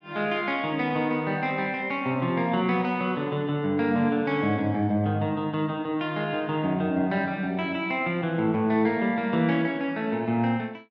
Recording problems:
none

